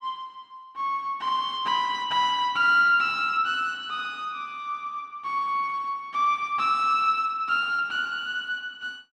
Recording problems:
none

